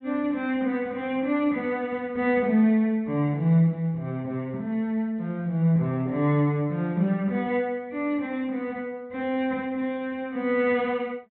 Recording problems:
low-pass filter; nothing above 4 kHz

